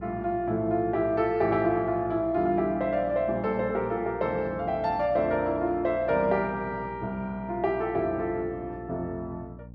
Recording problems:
electrical hum; 60 Hz, harmonics up to 540 Hz, SNR 18 dB

